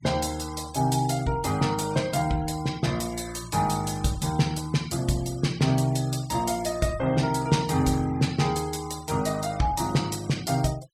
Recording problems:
denoising artefacts; signal-to-artefact ratio 20 dB

